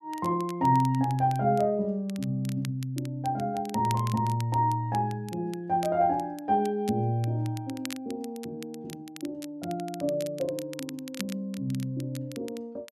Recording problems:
crackling; vinyl, SNR 18 dB

